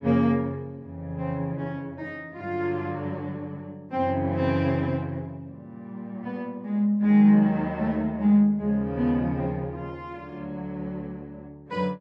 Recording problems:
none

